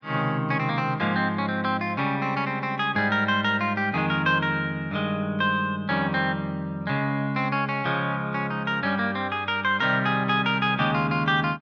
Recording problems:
none

